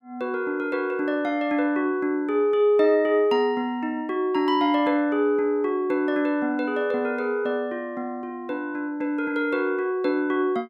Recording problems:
none

